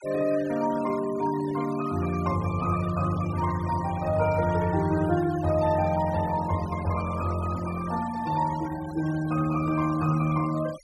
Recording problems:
denoising artefacts; signal-to-artefact ratio 16 dB

